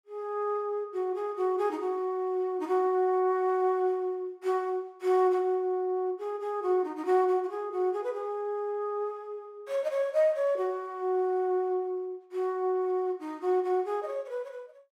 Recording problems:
none

